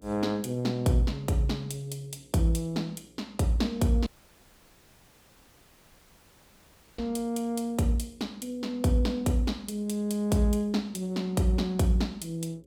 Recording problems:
hum; 60 Hz, harmonics up to 540 Hz, SNR 30 dB
dropout; at 4 s for 3 s

